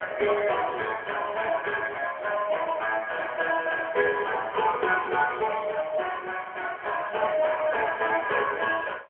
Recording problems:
telephone audio; 370 Hz to 2.2 kHz, AMR-NB

